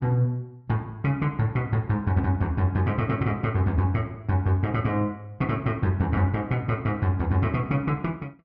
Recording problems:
none

